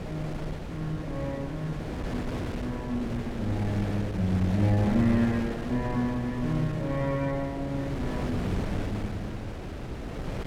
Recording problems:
wind noise; below 470 Hz, SNR 5 dB

